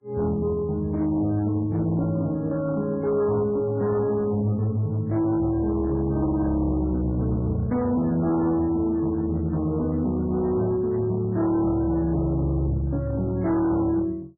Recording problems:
lossy codec; MP3, log-spectral distance 2 dB, nothing above 2 kHz
distorted audio; hard clipping, signal-to-distortion ratio 12 dB

